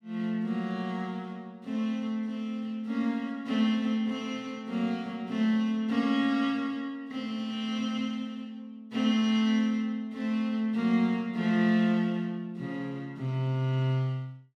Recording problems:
none

